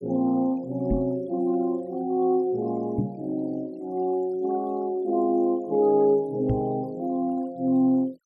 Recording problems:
noise reduction artefacts; signal-to-artefact ratio 27 dB
knock on the microphone; at 1 s, at 3 s and at 6.5 s; peak +3 dB vs average level

